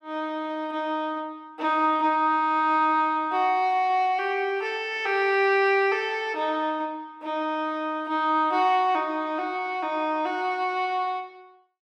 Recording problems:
none

